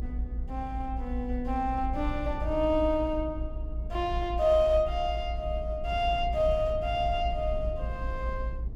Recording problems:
low-frequency rumble; below 60 Hz, SNR 6 dB

